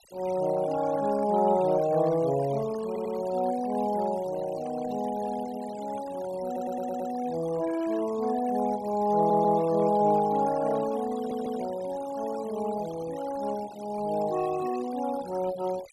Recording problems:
noise reduction artefacts; signal-to-artefact ratio 17 dB
stutter; 4 times, first at 3 s

